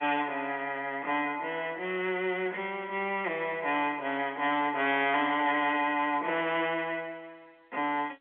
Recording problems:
telephone audio; 300 Hz to 3.6 kHz, G.711
distorted audio; hard clipping, signal-to-distortion ratio 14 dB

